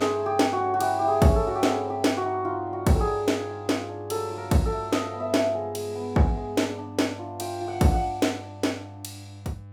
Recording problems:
mains hum; 50 Hz, harmonics up to 1 kHz, SNR 18 dB

